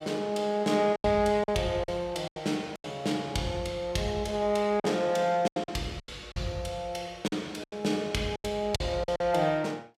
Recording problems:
lost packets; 9% of the sound replaced, filled with silence

